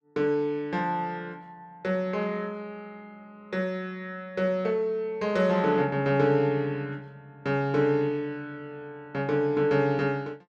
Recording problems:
none

